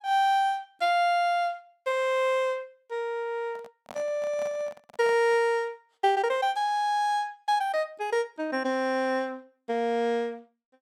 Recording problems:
handling noise; from 3.5 to 5.5 s; peak -11 dB vs average level

